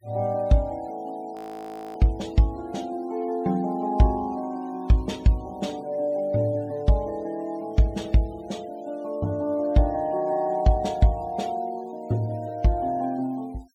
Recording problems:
denoising artefacts; signal-to-artefact ratio 28 dB
audio freezing; at 1.5 s for 0.5 s

